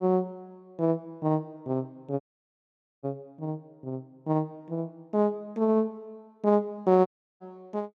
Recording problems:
audio cutting out; at 2 s for 1 s and at 7 s

